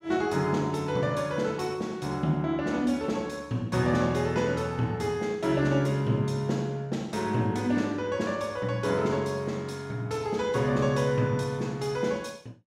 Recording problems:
none

